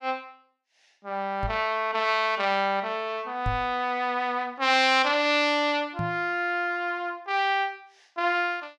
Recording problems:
microphone thump; at 1.5 s, at 3.5 s and at 6 s; peak -1 dB vs average level

